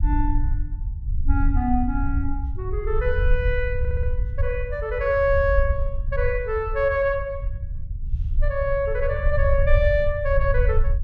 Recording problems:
low-frequency rumble; below 68 Hz, SNR 2 dB
stutter; at 4 s

